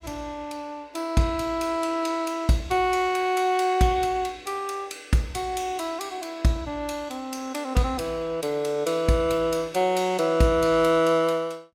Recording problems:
none

